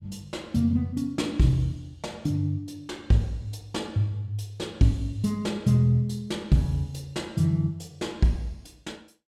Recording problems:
none

